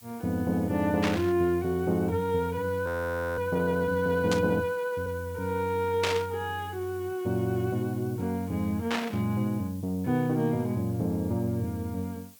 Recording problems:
background hiss; slope +2 dB per octave, SNR 23 dB
burst of static; 4 times, first at 1 s; peak +4 dB vs average level
audio freezing; at 3 s for 0.5 s

